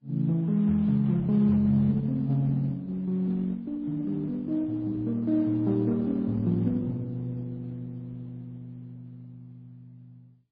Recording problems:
codec artefacts; Opus, then MP3, log-spectral distance 2 dB, nothing above 11.3 kHz

